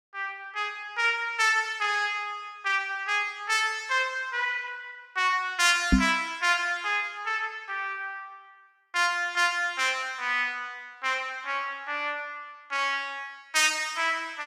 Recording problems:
microphone bump; at 6 s; peak +9 dB vs average level

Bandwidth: 16.5 kHz